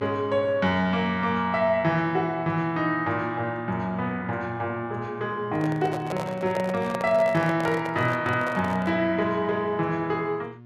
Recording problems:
hum; 60 Hz, harmonics up to 1.1 kHz, SNR 20 dB
microphone handling noise; from 5.5 to 9 s; peak -2 dB vs average level

